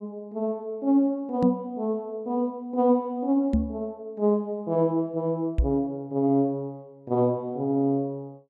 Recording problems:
microphone bump; at 1.5 s, at 3.5 s and at 5.5 s; peak +6 dB vs average level

